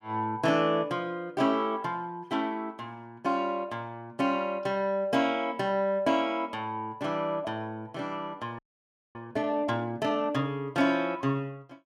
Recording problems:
frozen audio; at 8.5 s for 0.5 s

